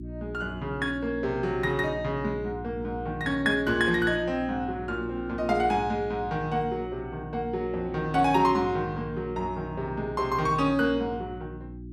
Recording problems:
electrical hum; 60 Hz, harmonics up to 360 Hz, SNR 13 dB

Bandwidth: 15 kHz